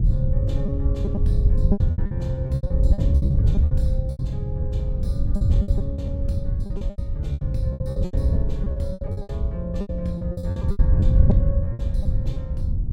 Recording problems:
wind on the microphone; below 100 Hz, SNR -8 dB
lost packets; 17% of the sound replaced, filled with repeated pitch periods

